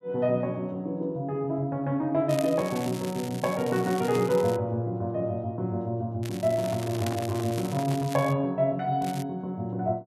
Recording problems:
crackle; from 2.5 to 4.5 s, from 6 to 8.5 s and at 9 s; loose cable, SNR 15 dB
microphone handling noise; from 6.5 to 8 s; peak -4 dB vs average level

